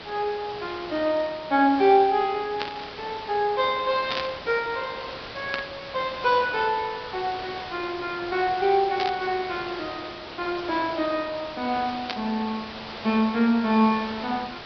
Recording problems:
treble cut off; nothing above 5.5 kHz
background hiss; SNR 12 dB
static burst; 5 times, first at 2.5 s; peak 0 dB vs average level

